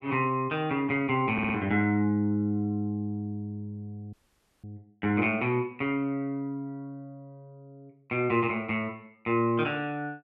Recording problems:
stutter; at 1.5 s
audio cutting out; at 4 s for 0.5 s

